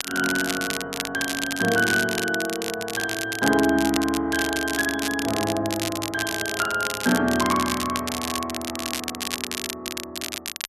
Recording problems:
crackling; vinyl, SNR 5 dB

